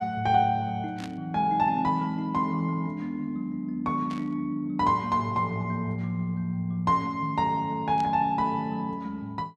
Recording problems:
static burst; at 1 s, at 4 s and at 8 s; peak -10 dB vs average level

